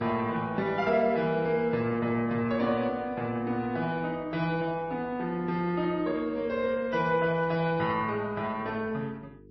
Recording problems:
lossy compression; MP3, then MP3, log-spectral distance 2 dB, nothing above 5.2 kHz
hum; 50 Hz, harmonics up to 450 Hz, SNR 24 dB

